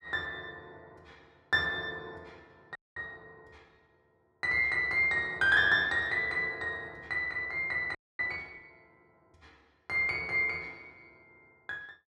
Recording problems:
audio freezing; at 3 s and at 8 s

